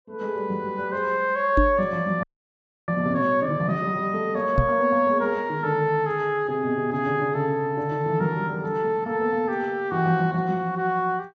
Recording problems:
treble cut off; nothing above 8 kHz
knock on the microphone; at 1.5 s and at 4.5 s; peak +5 dB vs average level
frozen audio; at 2 s for 0.5 s

